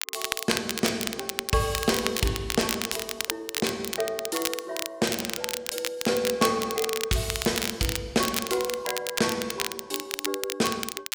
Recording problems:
crackling; vinyl, SNR 3 dB

